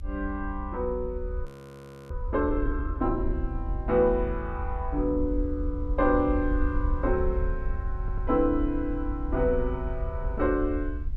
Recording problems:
rumble; below 70 Hz, SNR 5 dB
audio freezing; at 1.5 s for 0.5 s
stutter; at 8 s

